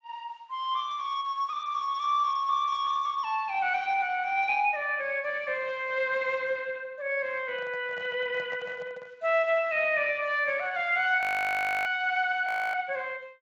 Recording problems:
lossy codec; Speex, log-spectral distance 3 dB, nothing above 19.5 kHz
microphone handling noise; from 7.5 to 9 s; peak -12 dB vs average level
frozen audio; at 11 s for 0.5 s and at 12 s

